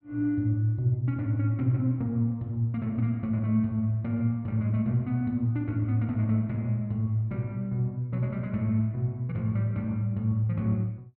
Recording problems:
none

